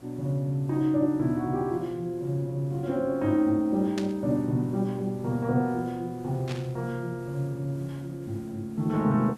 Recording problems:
background hiss; slope -6 dB per octave, SNR 24 dB
burst of static; at 4 s and at 6.5 s; peak -4 dB vs average level

